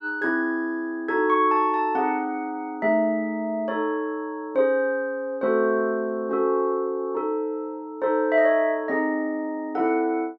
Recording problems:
none

